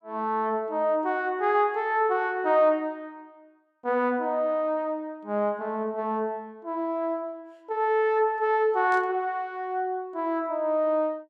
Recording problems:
burst of static; at 9 s; peak -16 dB vs average level

